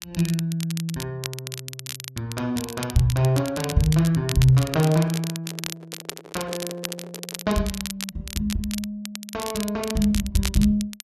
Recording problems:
crackling; vinyl, SNR 10 dB
microphone handling noise; from 4.5 to 7.5 s; peak -12 dB vs average level

